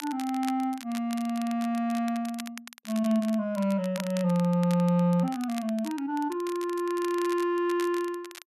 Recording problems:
crackle; vinyl, SNR 17 dB

